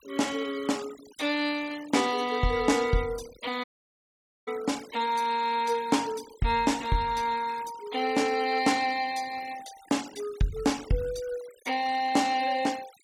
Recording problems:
noise reduction artefacts; signal-to-artefact ratio 17 dB
dropout; at 3.5 s for 1 s

